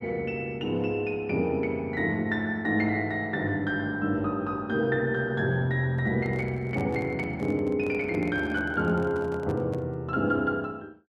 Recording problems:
microphone handling noise; from 6 to 10 s; peak -10 dB vs average level

